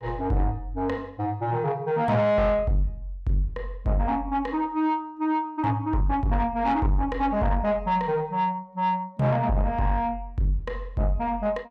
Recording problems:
distorted audio; soft clipping, signal-to-distortion ratio 11 dB

